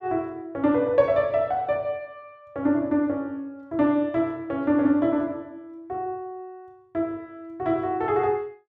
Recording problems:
none

